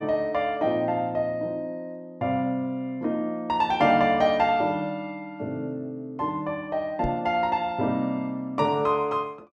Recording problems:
microphone bump; at 7 s; peak -3 dB vs average level

